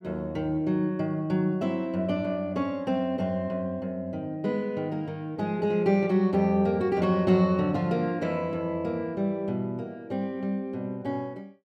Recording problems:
none

